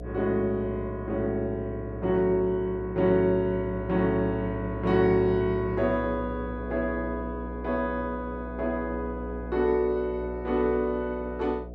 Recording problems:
electrical hum; 60 Hz, harmonics up to 720 Hz, SNR 11 dB

